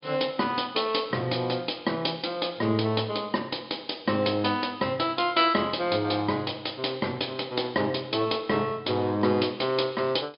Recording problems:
treble cut off; nothing above 5.1 kHz

